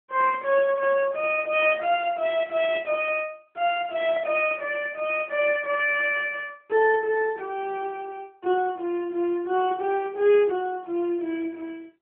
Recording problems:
phone line; 260 Hz to 3.4 kHz, AMR-NB

